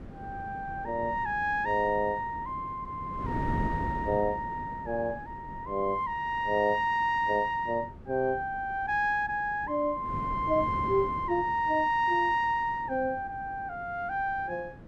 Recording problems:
wind noise; below 320 Hz, SNR 13 dB

